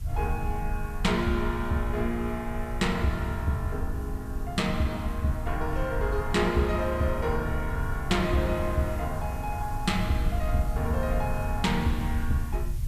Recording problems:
hiss; slope -1 dB per octave, SNR 22 dB
low-frequency rumble; below 88 Hz, SNR 5 dB

